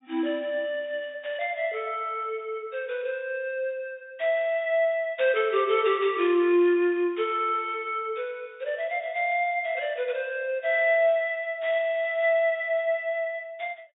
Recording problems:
treble cut off; nothing above 4 kHz

